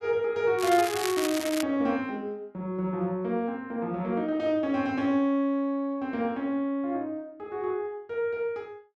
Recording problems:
crackle; from 0.5 to 1.5 s; loose cable, SNR 6 dB

